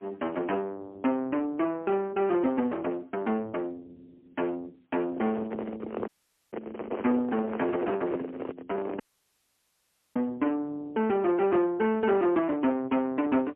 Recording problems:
telephone audio; 220 Hz to 3 kHz, AMR-NB, then MP3
distorted audio; soft clipping, signal-to-distortion ratio 10 dB
microphone handling noise; from 5 to 10 s; peak +2 dB vs average level
audio cutting out; at 6 s and at 9 s for 1 s

